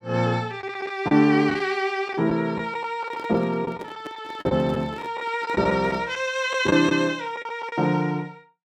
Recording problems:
lost packets; 8% of the sound replaced, filled with the last packet
microphone handling noise; from 3 to 6 s; peak -9 dB vs average level

